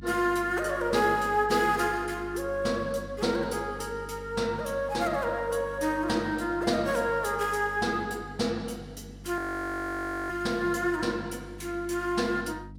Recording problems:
hum; 50 Hz, harmonics up to 300 Hz, SNR 17 dB
audio freezing; at 9.5 s for 1 s

